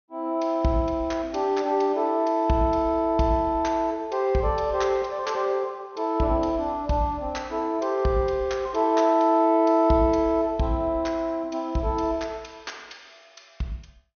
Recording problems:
treble cut off; nothing above 6.4 kHz

